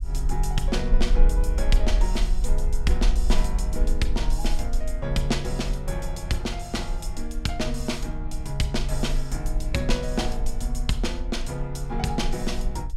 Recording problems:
rumble; below 40 Hz, strongest tone 20 Hz, SNR 0 dB

